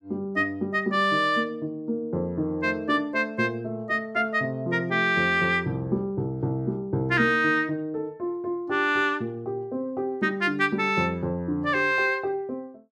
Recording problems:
none

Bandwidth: 13.5 kHz